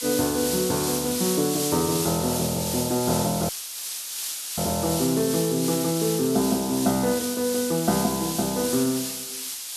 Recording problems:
hiss; slope +4 dB per octave, SNR 4 dB
dropout; at 3.5 s for 1 s

